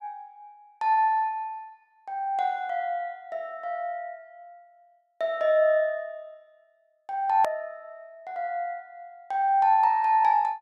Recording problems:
hard cut with a click; at 7.5 s

